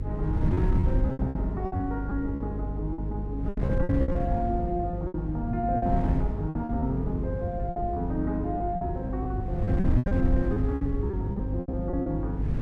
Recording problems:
electrical hum; 50 Hz, harmonics up to 500 Hz, SNR 3 dB
wind on the microphone; below 140 Hz, SNR 1 dB
lost packets; 14% of the sound replaced, filled with repeated pitch periods

